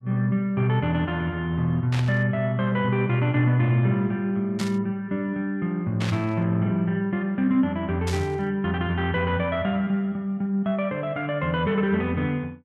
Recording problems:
static burst; 4 times, first at 2 s; peak -5 dB vs average level

